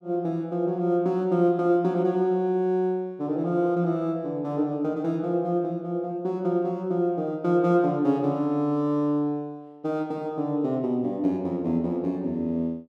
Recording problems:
none

